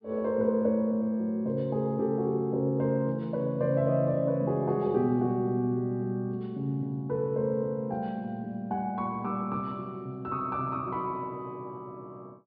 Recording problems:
low-pass filter; nothing above 5.5 kHz

